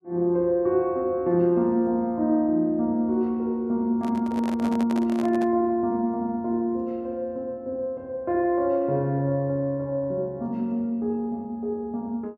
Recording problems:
microphone handling noise; from 4 to 5.5 s; peak -6 dB vs average level

